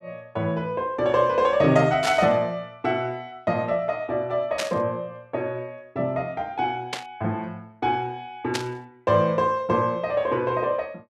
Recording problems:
static burst; 4 times, first at 2 s; peak +1 dB vs average level

